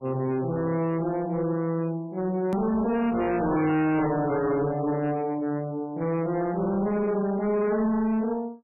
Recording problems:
codec artefacts; MP3, log-spectral distance 2 dB, nothing above 13.1 kHz
distortion; hard clipping, signal-to-distortion ratio 7 dB
click at an edit; at 2.5 s

